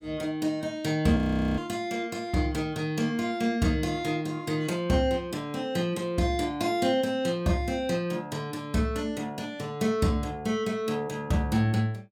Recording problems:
frozen audio; at 1 s

